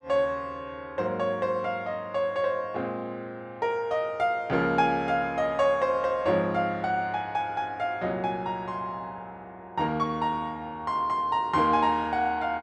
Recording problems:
none

